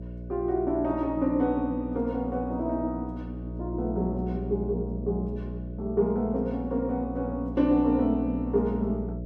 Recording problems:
hum; 60 Hz, harmonics up to 660 Hz, SNR 8 dB

